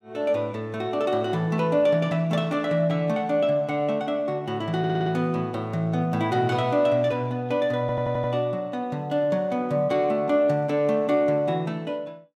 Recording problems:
stutter; at 5 s and at 8 s

